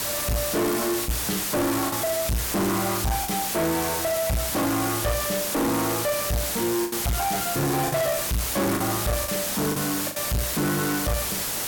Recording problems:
distorted audio; soft clipping, signal-to-distortion ratio 7 dB
hiss; slope -1 dB per octave, SNR 1 dB
packet loss; 4% of the sound replaced, filled with the last packet
crackling; from 1 to 4.5 s; loose cable, SNR 24 dB

